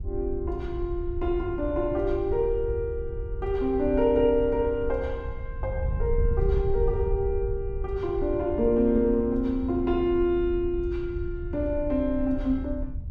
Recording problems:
wind noise; below 78 Hz, SNR 7 dB

